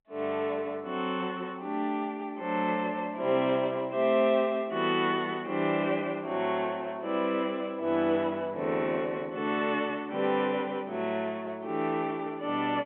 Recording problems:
phone line; 190 Hz to 3.6 kHz, G.711

